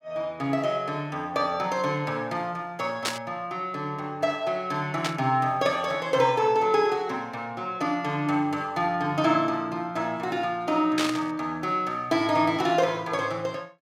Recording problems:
static burst; at 3 s, at 5 s and at 11 s; peak +3 dB vs average level

